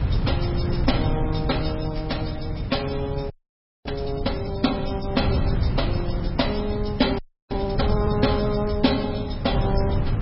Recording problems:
lossy codec; MP3, log-spectral distance 4 dB, nothing above 5.3 kHz
wind noise; below 140 Hz, SNR 2 dB
frozen audio; at 3.5 s for 0.5 s and at 7 s

